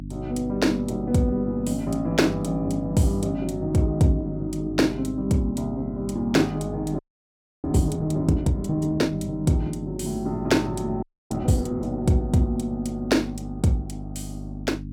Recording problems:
electrical hum; 50 Hz, harmonics up to 300 Hz, SNR 11 dB
audio freezing; at 7 s for 0.5 s and at 11 s

